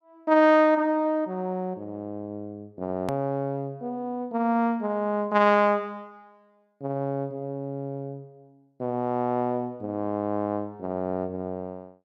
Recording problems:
edit click; at 3 s

